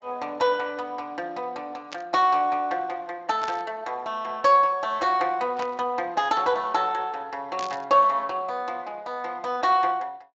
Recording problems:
lossy compression; Speex, log-spectral distance 2 dB
burst of static; 4 times, first at 2 s; peak -6 dB vs average level

